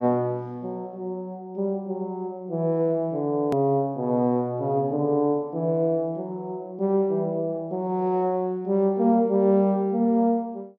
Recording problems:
edit click; at 3.5 s

